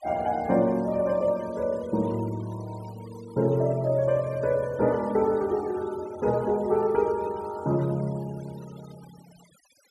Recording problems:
noise reduction artefacts; signal-to-artefact ratio 23 dB

